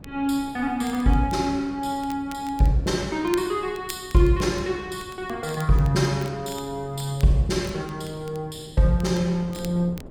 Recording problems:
wind noise; below 330 Hz, SNR 21 dB
crackle; vinyl, SNR 22 dB

